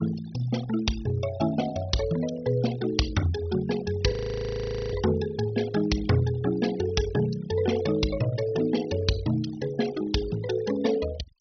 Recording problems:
low-pass filter; nothing above 6 kHz
denoising artefacts; signal-to-artefact ratio 14 dB
audio freezing; at 4 s for 1 s

